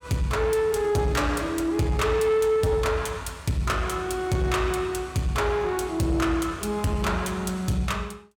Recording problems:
distorted audio; soft clipping, signal-to-distortion ratio 12 dB

